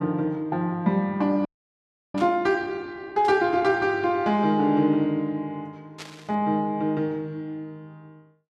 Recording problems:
frozen audio; at 1.5 s for 0.5 s
static burst; at 2 s, at 3.5 s and at 6 s; peak -9 dB vs average level

